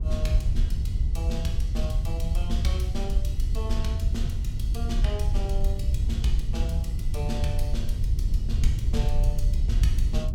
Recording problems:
wind noise; below 76 Hz, SNR -7 dB

